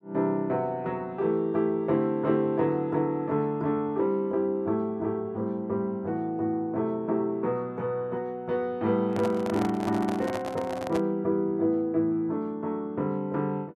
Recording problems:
handling noise; from 9 to 11 s; peak -3 dB vs average level

